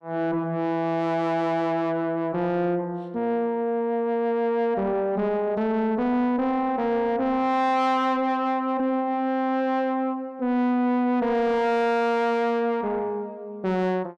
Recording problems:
distortion; soft clipping, signal-to-distortion ratio 7 dB

